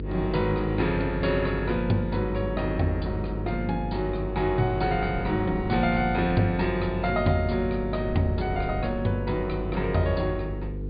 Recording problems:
treble cut off; nothing above 4.8 kHz
hum; 50 Hz, harmonics up to 500 Hz, SNR 6 dB
wind noise; below 230 Hz, SNR 18 dB

